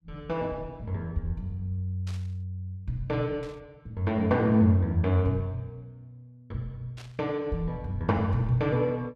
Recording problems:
burst of static; at 2 s, at 3.5 s and at 7 s; peak -13 dB vs average level

